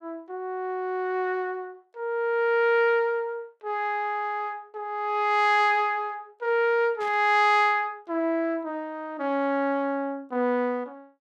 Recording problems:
static burst; at 7 s; peak -15 dB vs average level

